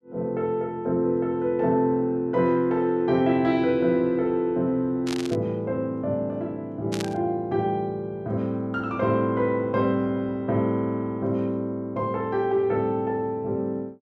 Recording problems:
burst of static; at 5 s and at 7 s; peak -4 dB vs average level

